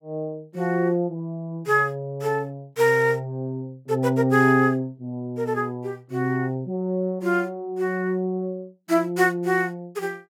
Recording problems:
none

